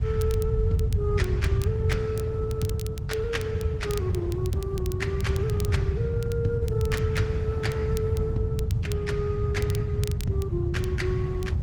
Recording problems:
lossy codec; Opus, log-spectral distance 2 dB, nothing above 18.9 kHz
rumble; below 120 Hz, SNR -5 dB
wind noise; below 550 Hz, SNR 18 dB
crackling; vinyl, SNR 14 dB

